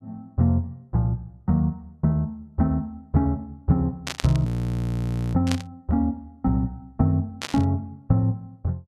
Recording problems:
burst of static; at 4 s, at 5.5 s and at 7.5 s; peak 0 dB vs average level
frozen audio; at 4.5 s for 1 s

